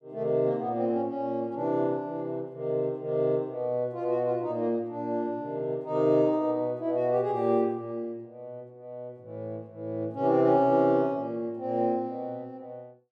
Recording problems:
none

